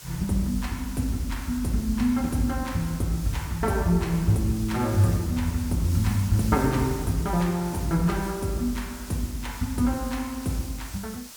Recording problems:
background hiss; slope 0 dB per octave, SNR 15 dB

